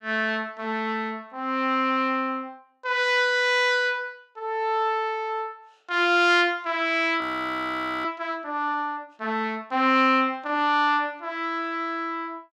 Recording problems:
frozen audio; at 7 s for 1 s

